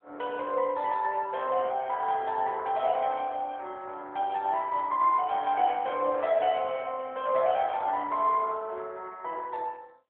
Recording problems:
telephone audio; 340 Hz to 3.6 kHz, AMR-NB

